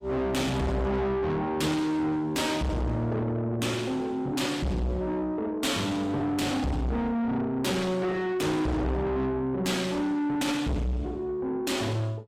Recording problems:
lossy compression; AAC, log-spectral distance 2 dB, nothing above 15.1 kHz
distortion; soft clipping, signal-to-distortion ratio 7 dB

